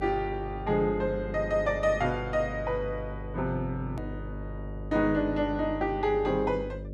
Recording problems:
electrical hum; 50 Hz, harmonics up to 600 Hz, SNR 10 dB
hard cut with a click; at 4 s

